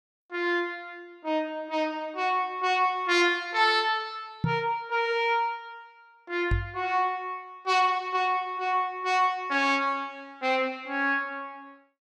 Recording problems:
knock on the microphone; at 4.5 s and at 6.5 s; peak +3 dB vs average level

